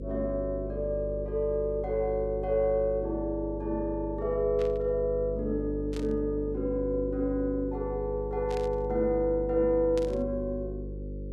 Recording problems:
electrical hum; 50 Hz, harmonics up to 550 Hz, SNR 8 dB
burst of static; 4 times, first at 4.5 s; peak -9 dB vs average level

